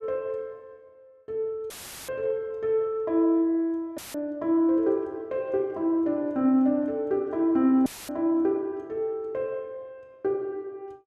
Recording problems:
dropout; at 1.5 s, at 4 s and at 8 s; filled with static

